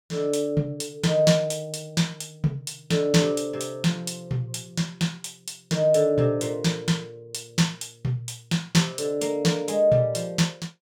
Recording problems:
none

